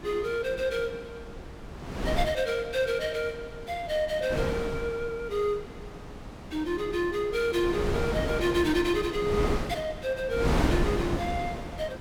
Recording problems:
wind noise; below 570 Hz, SNR 5 dB

